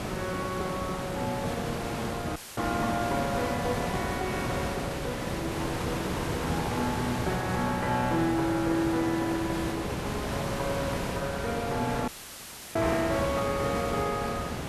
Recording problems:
hiss; slope -5 dB per octave, SNR 2 dB
audio cutting out; at 2.5 s and at 12 s for 0.5 s; filled with static

